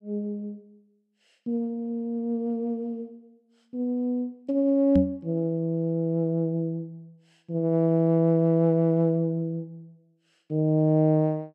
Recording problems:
microphone thump; at 5 s; peak +4 dB vs average level

